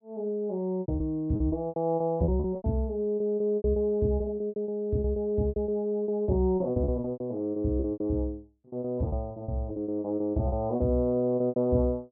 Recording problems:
lost packets; 18% of the sound replaced, filled with repeated pitch periods

